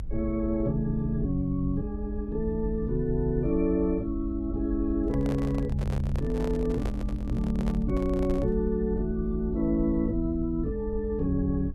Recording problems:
low-frequency rumble; below 56 Hz, SNR 7 dB
handling noise; from 5 to 8.5 s; peak -5 dB vs average level

